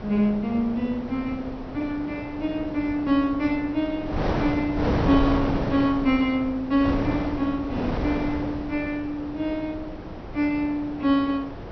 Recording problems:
treble cut off; nothing above 5.9 kHz
wind noise; below 660 Hz, SNR 6 dB

